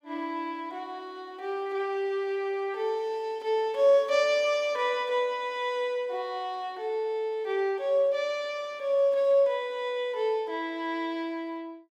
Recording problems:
none

